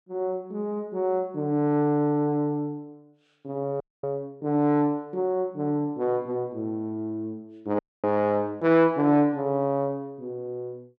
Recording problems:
frozen audio; at 4 s and at 8 s

